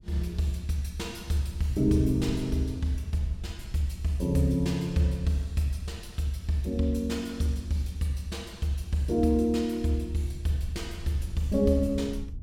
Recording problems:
wind on the microphone; below 96 Hz, SNR 13 dB

